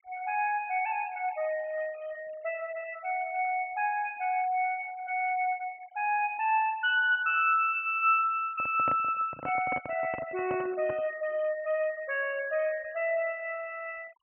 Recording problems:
treble missing; nothing above 3.1 kHz
denoising artefacts; signal-to-artefact ratio 22 dB
handling noise; from 8.5 to 11 s; peak -4 dB vs average level

